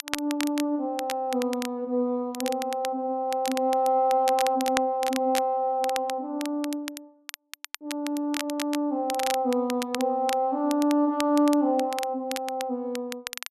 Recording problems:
crackle; vinyl, SNR 11 dB

